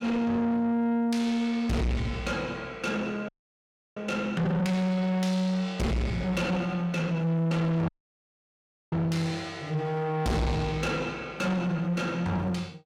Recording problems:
distortion; soft clipping, signal-to-distortion ratio 7 dB
dropout; at 3.5 s for 0.5 s and at 8 s for 1 s

